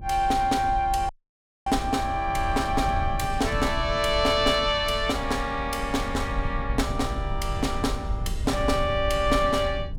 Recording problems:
low-frequency rumble; below 92 Hz, SNR 8 dB
audio cutting out; at 1 s for 0.5 s

